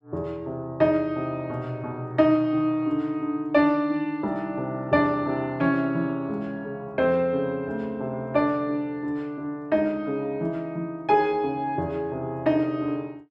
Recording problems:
none

